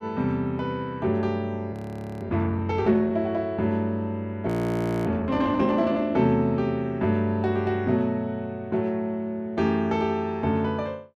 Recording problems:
audio freezing; at 1.5 s and at 4.5 s for 0.5 s

